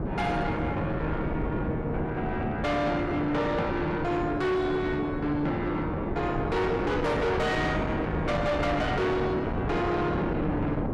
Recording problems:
distorted audio; soft clipping, signal-to-distortion ratio 7 dB
wind on the microphone; below 520 Hz, SNR 3 dB

